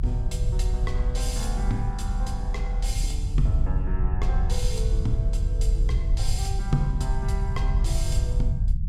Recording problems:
low-frequency rumble; below 72 Hz, strongest tone 38 Hz, SNR -6 dB

